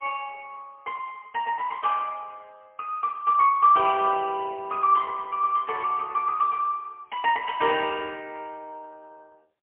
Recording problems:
telephone audio; 260 Hz to 3.1 kHz, AMR-NB, then MP3

